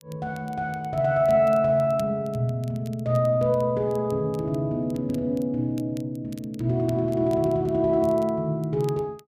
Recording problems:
crackling; vinyl, SNR 28 dB

